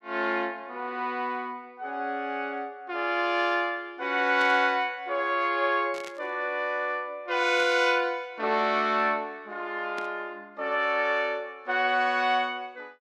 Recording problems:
static burst; 4 times, first at 4.5 s; peak -9 dB vs average level

